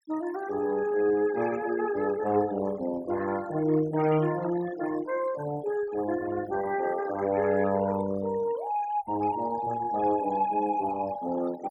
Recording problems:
noise reduction artefacts; signal-to-artefact ratio 15 dB

